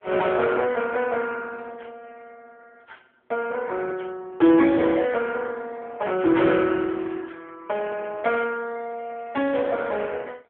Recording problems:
phone line; 260 Hz to 3.4 kHz, AMR-NB

